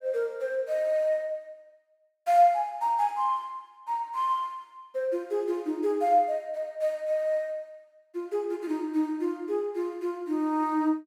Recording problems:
none

